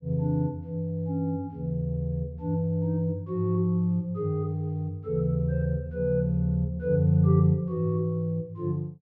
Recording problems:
none

